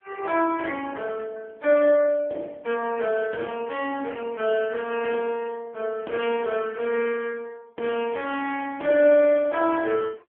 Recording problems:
phone line; 260 Hz to 3.2 kHz, AMR-NB

